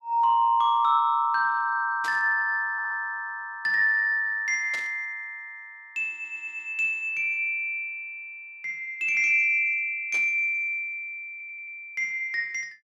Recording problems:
burst of static; at 2 s, at 4.5 s and at 10 s; peak -10 dB vs average level
stutter; at 2.5 s, at 6 s and at 11 s

